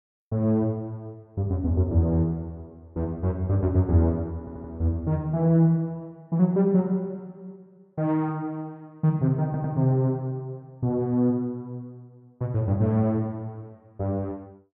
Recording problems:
audio stuttering; at 4.5 s and at 9.5 s

